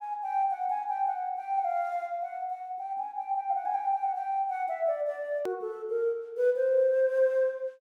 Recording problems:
click at an edit; at 5.5 s

